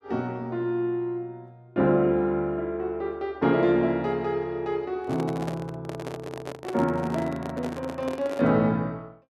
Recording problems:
microphone handling noise; from 5 to 8.5 s; peak -4 dB vs average level

